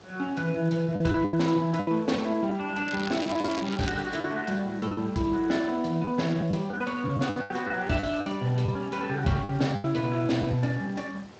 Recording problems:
codec artefacts; Speex, log-spectral distance 6 dB
hiss; slope 0 dB per octave, SNR 29 dB
wind noise; below 1 kHz, SNR 23 dB
lost packets; 9% of the sound replaced, filled with the last packet
crackle; from 3 to 4 s; loose cable, SNR 10 dB

